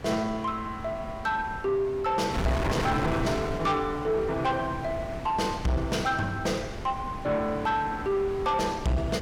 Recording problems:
distortion; soft clipping, signal-to-distortion ratio 11 dB
wind noise; below 750 Hz, SNR 8 dB

